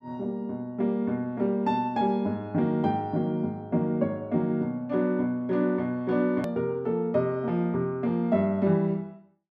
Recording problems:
click at an edit; at 6.5 s

